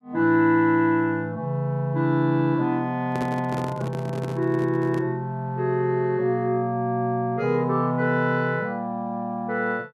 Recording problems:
handling noise; from 3 to 5 s; peak -5 dB vs average level

